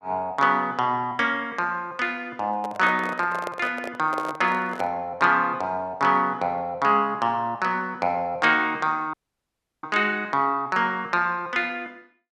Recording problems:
handling noise; from 2.5 to 5 s; peak -4 dB vs average level
dropout; at 9 s for 0.5 s

